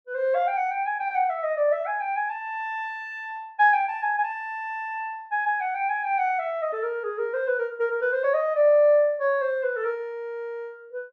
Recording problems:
none

